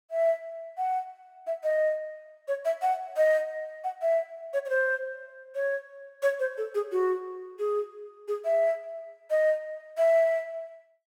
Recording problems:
none

